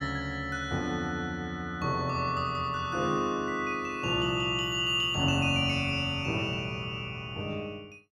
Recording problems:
none

